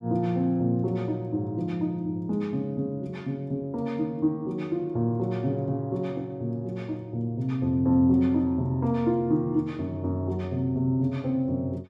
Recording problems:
none

